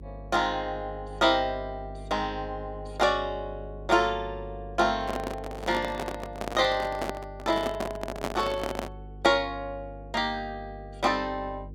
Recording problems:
mains hum; 50 Hz, harmonics up to 500 Hz, SNR 15 dB
microphone handling noise; from 5 to 9 s; peak +1 dB vs average level

